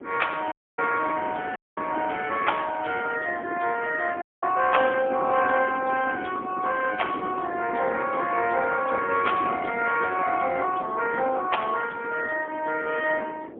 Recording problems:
telephone audio; 280 Hz to 3.3 kHz, AMR-NB, then MP3
wind on the microphone; below 500 Hz, SNR 11 dB
dropout; at 0.5 s, at 1.5 s and at 4 s

